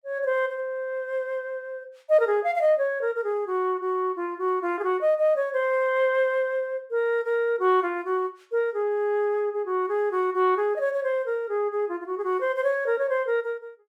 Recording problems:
none

